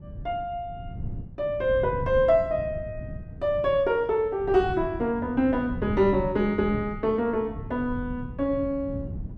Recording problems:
wind on the microphone; below 160 Hz, SNR 12 dB

